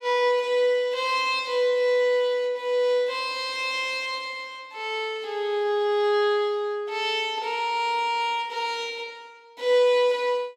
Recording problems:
none

